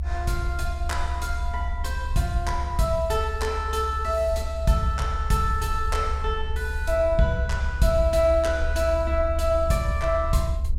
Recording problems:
rumble; below 70 Hz, SNR 4 dB

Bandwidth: 16 kHz